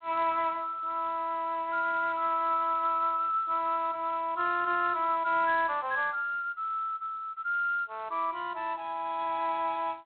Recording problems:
telephone audio; 280 Hz to 3.9 kHz, G.726

